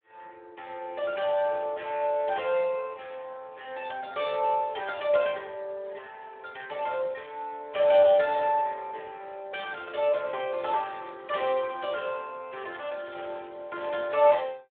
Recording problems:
phone line; 300 Hz to 3.7 kHz, Speex

